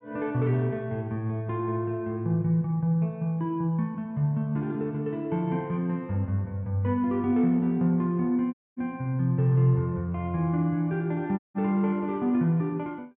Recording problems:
dropout; at 8.5 s and at 11 s

